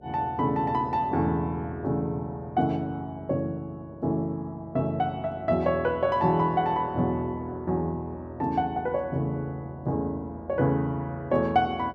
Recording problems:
mains hum; 60 Hz, harmonics up to 660 Hz, SNR 24 dB

